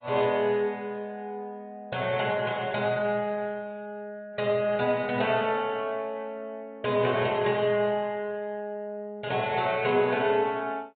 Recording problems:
treble missing; nothing above 3.8 kHz
codec artefacts; AAC, log-spectral distance 2 dB

